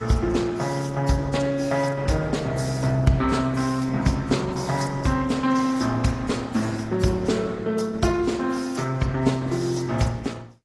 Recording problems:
lossy codec; Opus, then AAC, log-spectral distance 4 dB, nothing above 11 kHz

